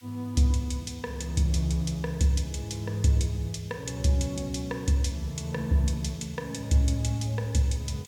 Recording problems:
background hiss; SNR 26 dB

